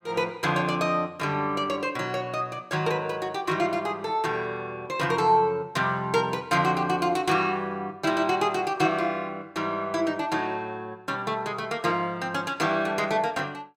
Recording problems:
none

